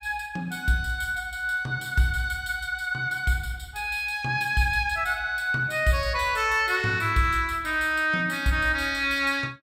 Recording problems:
none

